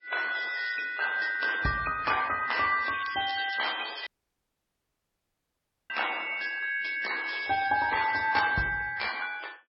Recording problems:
lossy compression; MP3, then MP3, log-spectral distance 8 dB, nothing above 5.3 kHz
crackling; from 3 to 4 s; loose cable, SNR 12 dB
audio cutting out; at 4 s for 2 s

